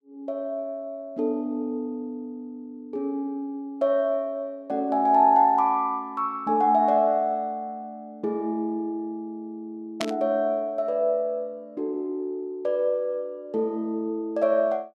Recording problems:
burst of static; at 10 s; peak -1 dB vs average level

